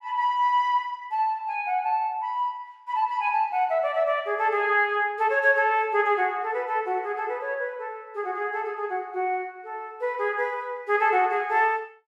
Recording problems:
none

